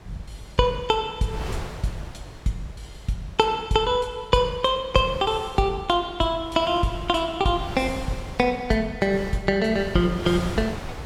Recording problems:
wind on the microphone; below 870 Hz, SNR 14 dB

